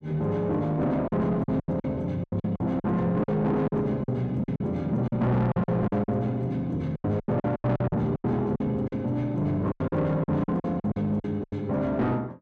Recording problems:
distortion; soft clipping, signal-to-distortion ratio 10 dB
packet loss; 14% of the sound replaced, filled with silence

